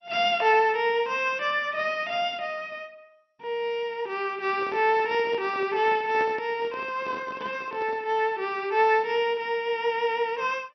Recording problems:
codec artefacts; MP2, log-spectral distance 2 dB, nothing above 5.8 kHz
handling noise; from 4.5 to 8 s; peak -7 dB vs average level

